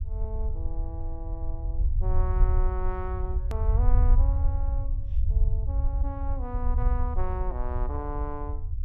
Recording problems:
rumble; below 68 Hz, SNR -9 dB
hard cut with a click; at 3.5 s

